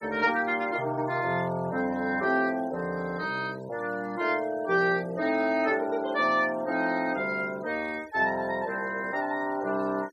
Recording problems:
noise reduction artefacts; signal-to-artefact ratio 23 dB

